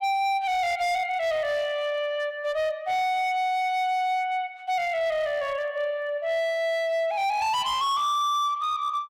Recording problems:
distorted audio; hard clipping, signal-to-distortion ratio 12 dB

